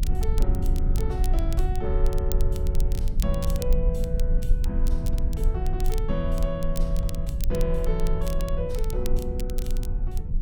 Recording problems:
low-frequency rumble; below 54 Hz, strongest tone 26 Hz, SNR -5 dB
crackling; vinyl, SNR 11 dB

